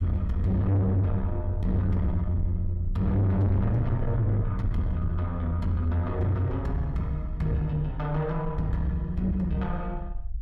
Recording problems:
distorted audio; soft clipping, signal-to-distortion ratio 8 dB
low-frequency rumble; below 66 Hz, SNR 9 dB

